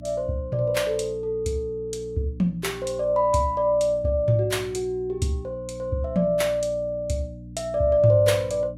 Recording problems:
hum; 60 Hz, harmonics up to 300 Hz, SNR 17 dB

